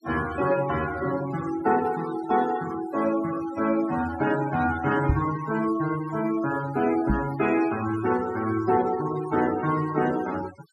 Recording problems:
noise reduction artefacts; signal-to-artefact ratio 14 dB
microphone thump; at 5 s and at 7 s; peak +6 dB vs average level

